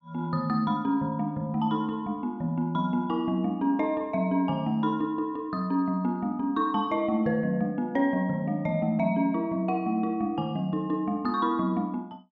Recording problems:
none

